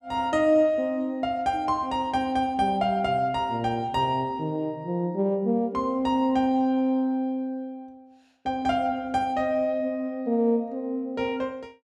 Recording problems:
none

